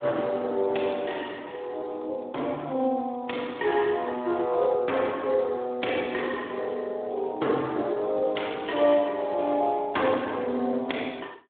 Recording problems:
telephone audio; 220 Hz to 3.5 kHz, Speex

